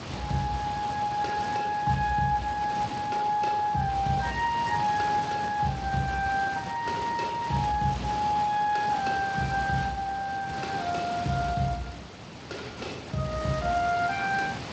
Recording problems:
codec artefacts; Speex, log-spectral distance 9 dB
background hiss; slope -4 dB per octave, SNR 10 dB

